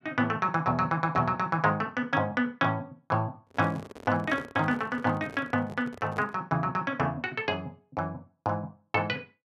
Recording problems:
microphone handling noise; from 3.5 to 6.5 s; peak -8 dB vs average level

